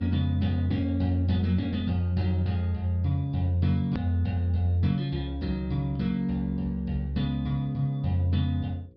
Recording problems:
treble cut off; nothing above 5.5 kHz
hum; 60 Hz, harmonics up to 540 Hz, SNR 30 dB
edit click; at 4 s

